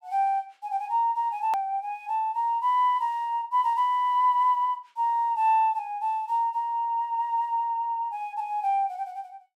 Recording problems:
click at an edit; at 1.5 s

